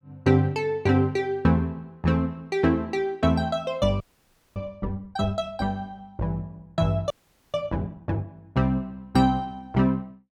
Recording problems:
audio freezing; at 4 s for 0.5 s and at 7 s

